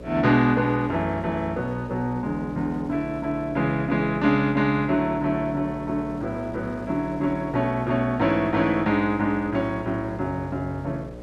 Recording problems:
hum; 60 Hz, harmonics up to 600 Hz, SNR 15 dB
wind on the microphone; below 1.1 kHz, SNR 24 dB

